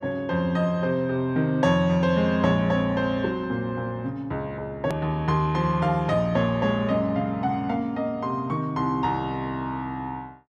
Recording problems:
edit click; at 5 s

